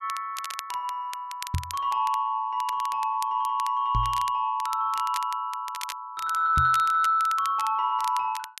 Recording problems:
crackling; vinyl, SNR 15 dB
microphone thump; at 1.5 s, at 4 s and at 6.5 s; peak +1 dB vs average level

